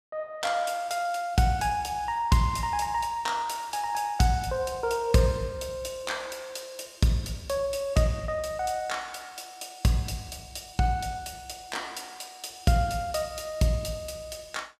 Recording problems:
none

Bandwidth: 14.5 kHz